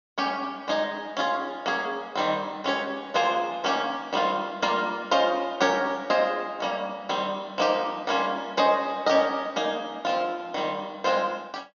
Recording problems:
treble missing; nothing above 6.7 kHz

